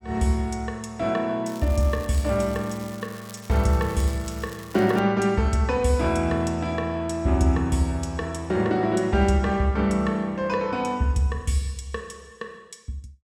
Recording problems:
crackling; from 1.5 to 5 s; loose cable, SNR 21 dB

